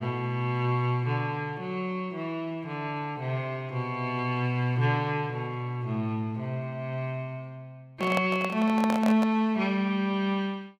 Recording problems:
handling noise; from 8 to 9.5 s; peak +2 dB vs average level

